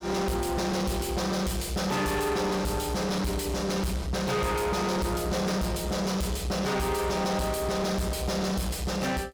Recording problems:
distortion; soft clipping, signal-to-distortion ratio 7 dB

